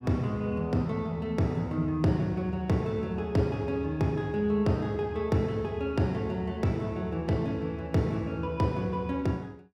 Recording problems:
none

